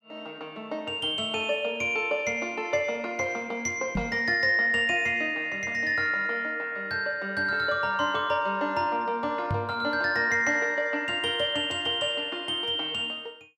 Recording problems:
microphone thump; at 4 s and at 9.5 s; peak -1 dB vs average level

